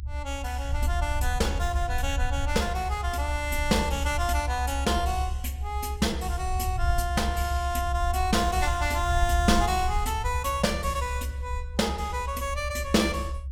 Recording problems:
rumble; below 70 Hz, SNR 3 dB

